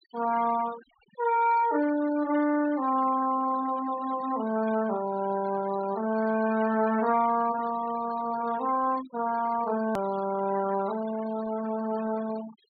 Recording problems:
treble missing; nothing above 4.5 kHz
noise reduction artefacts; signal-to-artefact ratio 17 dB
edit click; at 10 s

